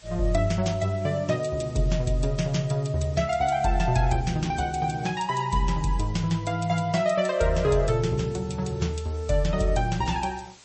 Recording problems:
lossy compression; MP3, log-spectral distance 4 dB, nothing above 8.2 kHz
hiss; slope 0 dB per octave, SNR 24 dB

